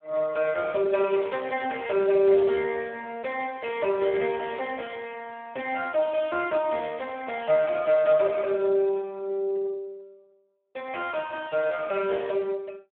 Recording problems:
telephone audio; 150 Hz to 3 kHz, Speex

